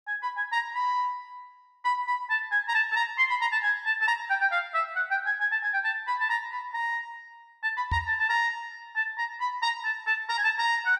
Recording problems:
microphone thump; at 8 s; peak -1 dB vs average level

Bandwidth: 13.5 kHz